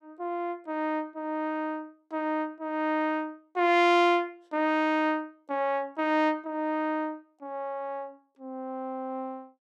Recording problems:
none

